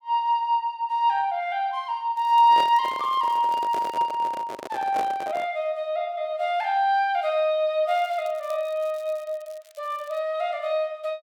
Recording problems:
crackling; from 2 to 4 s and from 8 to 10 s; loose cable, SNR 29 dB
microphone handling noise; from 2.5 to 5.5 s; peak -4 dB vs average level

